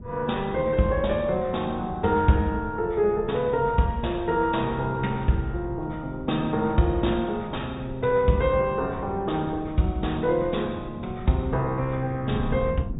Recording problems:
treble missing; nothing above 3.8 kHz
lossy compression; MP2, then MP3, log-spectral distance 2 dB
wind on the microphone; below 180 Hz, SNR 14 dB

